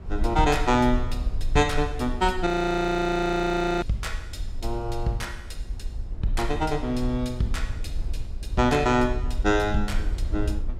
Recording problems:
rumble; below 60 Hz, SNR 8 dB
frozen audio; at 2.5 s for 1.5 s

